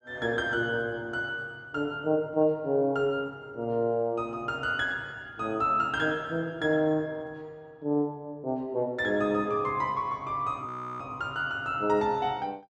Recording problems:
audio freezing; at 11 s

